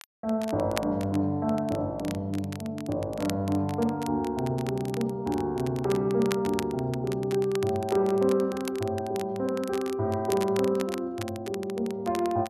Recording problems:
crackling; vinyl, SNR 15 dB

